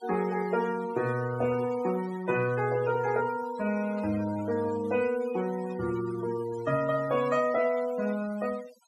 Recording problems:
denoising artefacts; signal-to-artefact ratio 15 dB
static burst; at 4 s; peak -21 dB vs average level

